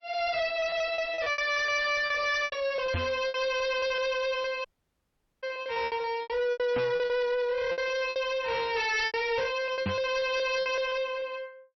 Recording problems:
codec artefacts; MP3, log-spectral distance 3 dB, nothing above 5.8 kHz
distortion; soft clipping, signal-to-distortion ratio 8 dB
lost packets; 14% of the sound replaced, filled with repeated pitch periods
microphone thump; at 3 s, at 7 s and at 10 s; peak +3 dB vs average level
audio cutting out; at 4.5 s for 1 s

